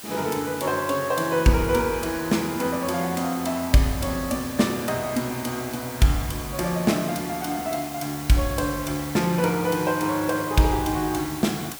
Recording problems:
hiss; slope -1 dB per octave, SNR 12 dB

